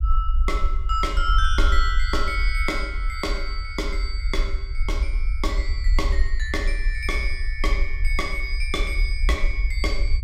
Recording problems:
rumble; below 52 Hz, SNR -1 dB

